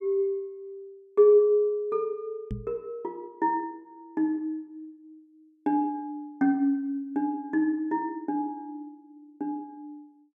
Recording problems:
microphone thump; at 2.5 s; peak -3 dB vs average level

